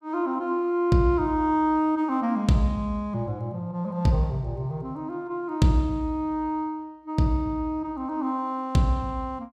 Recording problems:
none

